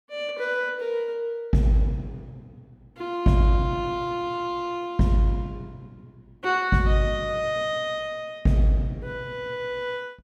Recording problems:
none

